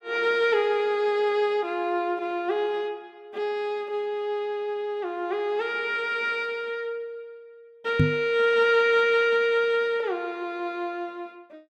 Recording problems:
knock on the microphone; at 8 s; peak +7 dB vs average level

